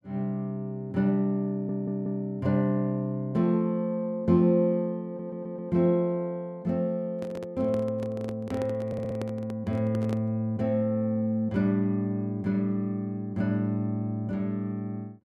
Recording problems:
audio stuttering; at 1.5 s, at 5 s and at 9 s
handling noise; from 7 to 10 s; peak -5 dB vs average level

